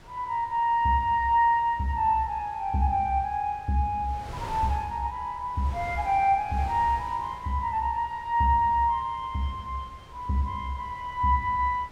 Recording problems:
wind noise; below 1.1 kHz, SNR 20 dB

